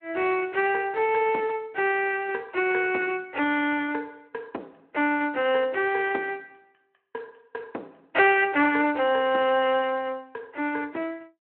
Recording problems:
telephone audio; 260 Hz to 3.1 kHz, Speex

